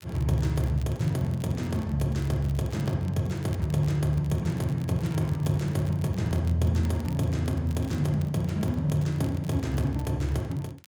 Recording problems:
crackling; vinyl, SNR 24 dB

